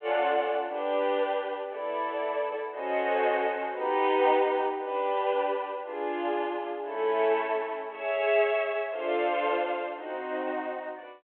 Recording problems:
phone line; 300 Hz to 3.4 kHz, G.726

